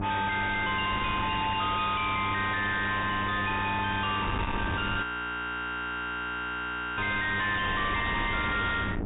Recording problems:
treble missing; nothing above 4 kHz
distorted audio; soft clipping, signal-to-distortion ratio 6 dB
mains hum; 50 Hz, harmonics up to 2.9 kHz, SNR 6 dB
wind on the microphone; below 1.8 kHz, SNR 7 dB
frozen audio; at 5 s for 2 s

